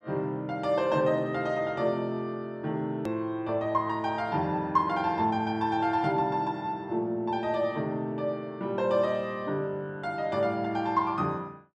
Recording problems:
edit click; at 3 s

